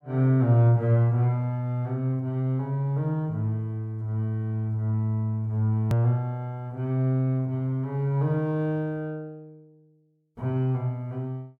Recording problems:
edit click; at 6 s

